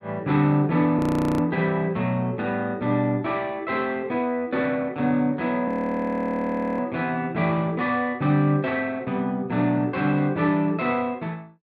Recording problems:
frozen audio; at 1 s and at 5.5 s for 1 s

